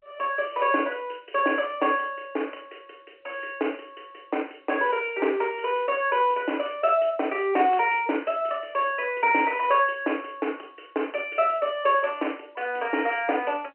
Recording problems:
phone line; 280 Hz to 3.1 kHz, G.711

